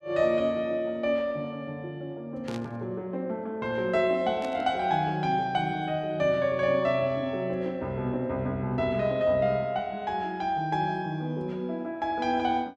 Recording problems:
burst of static; at 2.5 s and at 4.5 s; peak -10 dB vs average level

